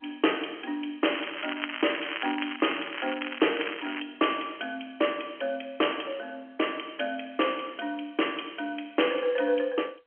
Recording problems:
phone line; 260 Hz to 3.2 kHz, G.711
crackle; from 1 to 4 s; loose cable, SNR 6 dB

